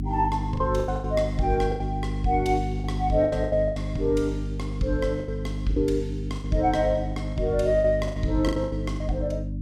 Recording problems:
hum; 50 Hz, harmonics up to 300 Hz, SNR 4 dB
packet loss; 12% of the sound replaced, filled with the last packet

